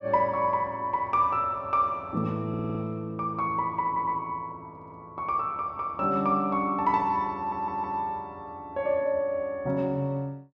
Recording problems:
audio stuttering; 4 times, first at 2.5 s

